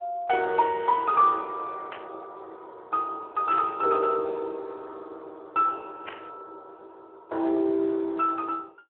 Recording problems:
telephone audio; 280 Hz to 3.6 kHz, Speex
static burst; at 2 s, at 3.5 s and at 6 s; peak -8 dB vs average level

